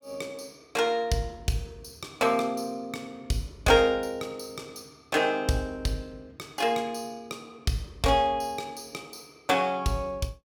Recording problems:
none

